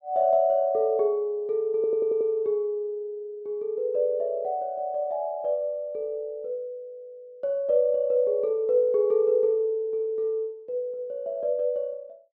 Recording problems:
stutter; at 2 s

